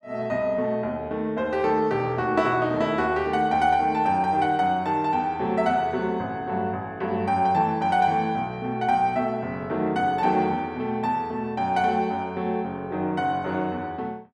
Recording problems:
none

